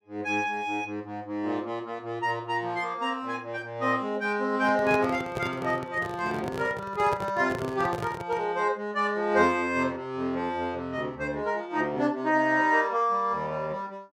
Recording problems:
microphone handling noise; from 4.5 to 8.5 s; peak -2 dB vs average level

